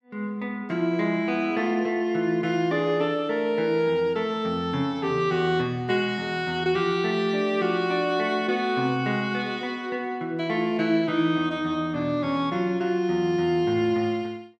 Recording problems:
none

